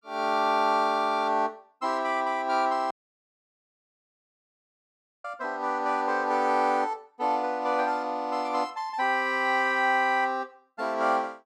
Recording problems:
dropout; at 3 s for 2.5 s

